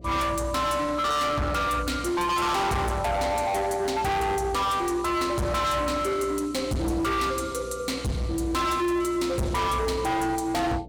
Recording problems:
distortion; hard clipping, signal-to-distortion ratio 6 dB
electrical hum; 60 Hz, harmonics up to 720 Hz, SNR 20 dB

